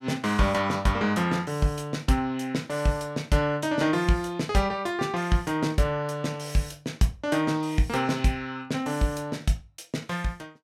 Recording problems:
none

